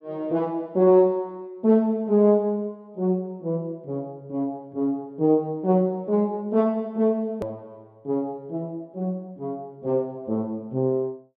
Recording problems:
hard cut with a click; at 7.5 s

